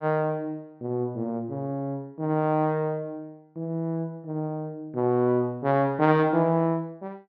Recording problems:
low-pass filter; nothing above 6.8 kHz

